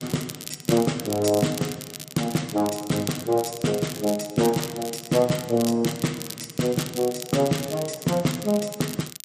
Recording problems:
lossy compression; MP3, log-spectral distance 3 dB, nothing above 10.4 kHz
crackle; vinyl, SNR 11 dB

